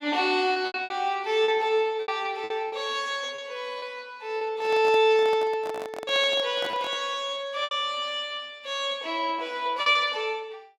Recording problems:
lost packets; 8% of the sound replaced, filled with repeated pitch periods
handling noise; from 4.5 to 7 s; peak -6 dB vs average level

